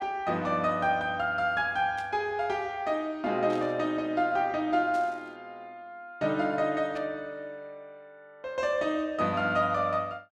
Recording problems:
burst of static; 4 times, first at 2 s; peak -13 dB vs average level

